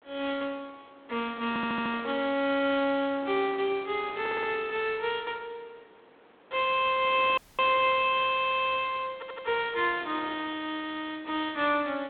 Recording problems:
telephone audio; 240 Hz to 4 kHz, G.726
wind noise; below 1.7 kHz, SNR 23 dB
audio stuttering; 4 times, first at 1.5 s
dropout; at 7.5 s

